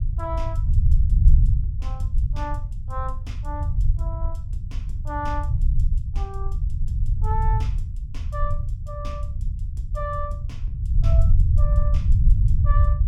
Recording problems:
rumble; below 80 Hz, SNR -11 dB

